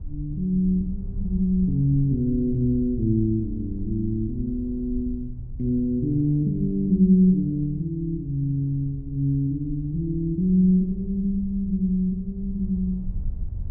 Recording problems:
wind on the microphone; below 76 Hz, SNR 13 dB

